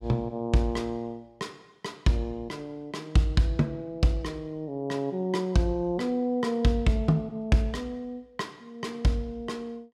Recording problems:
none

